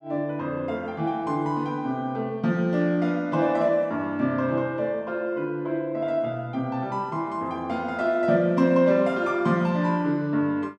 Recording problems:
none

